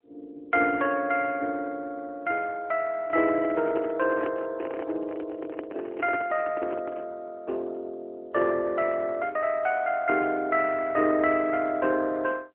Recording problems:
phone line; 280 Hz to 3.3 kHz, AMR-NB
handling noise; from 3 to 7 s; peak -1 dB vs average level

